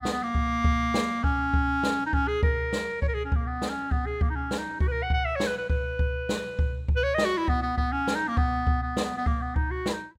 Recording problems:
none

